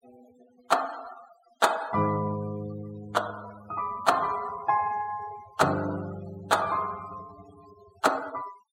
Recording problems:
denoising artefacts; signal-to-artefact ratio 18 dB

